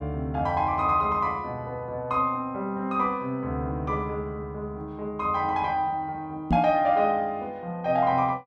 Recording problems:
knock on the microphone; at 6.5 s; peak +6 dB vs average level

